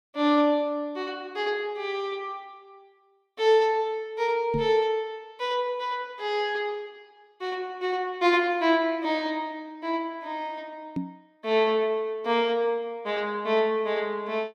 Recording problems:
microphone thump; at 4.5 s and at 11 s; peak 0 dB vs average level

